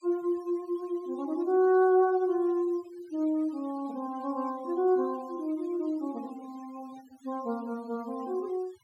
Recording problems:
denoising artefacts; signal-to-artefact ratio 26 dB

